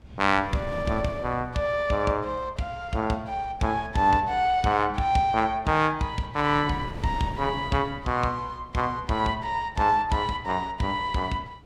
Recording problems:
wind noise; below 310 Hz, SNR 17 dB

